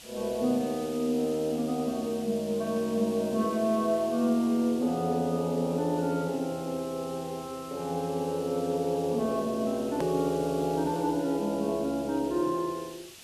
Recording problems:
hiss; SNR 18 dB
edit click; at 10 s

